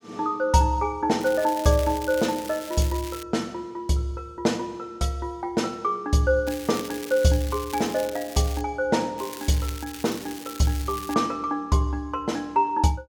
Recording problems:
crackle; from 1 to 3 s, from 6.5 to 8.5 s and from 9 to 11 s; loose cable, SNR 14 dB

